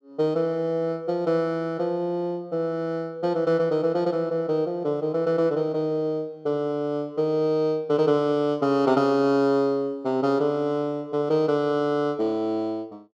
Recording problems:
none

